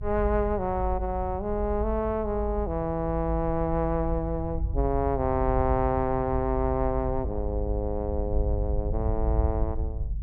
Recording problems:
low-frequency rumble; below 74 Hz, strongest tone 52 Hz, SNR 4 dB

